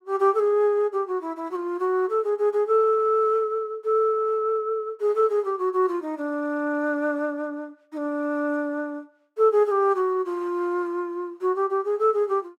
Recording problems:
none

